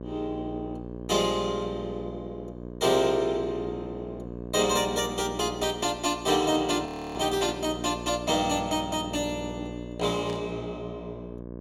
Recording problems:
hum; 60 Hz, harmonics up to 1.1 kHz, SNR 11 dB
audio freezing; at 7 s
static burst; at 7.5 s and at 10 s; peak -11 dB vs average level

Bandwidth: 16 kHz